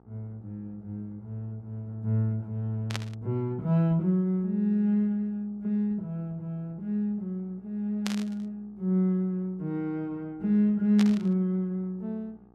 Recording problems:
hum; 60 Hz, harmonics up to 1.3 kHz, SNR 30 dB
burst of static; at 3 s, at 8 s and at 11 s; peak -1 dB vs average level

